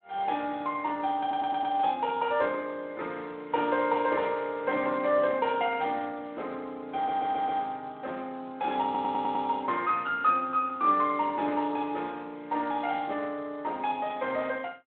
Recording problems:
phone line; 260 Hz to 3.7 kHz, Speex
audio stuttering; at 1 s, at 7 s and at 9 s

